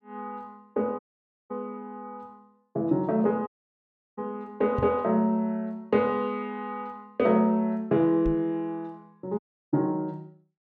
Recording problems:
audio cutting out; at 1 s for 0.5 s, at 3.5 s for 0.5 s and at 9.5 s
microphone bump; at 5 s and at 8.5 s; peak 0 dB vs average level

